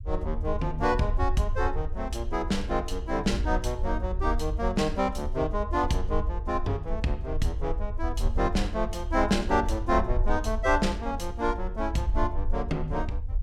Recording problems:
rumble; below 64 Hz, SNR 4 dB

